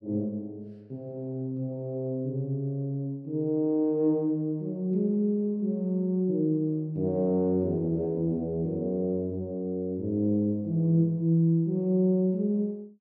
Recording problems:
none

